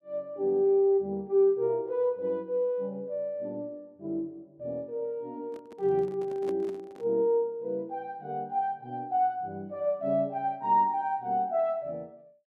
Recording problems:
handling noise; from 5.5 to 7 s; peak -9 dB vs average level

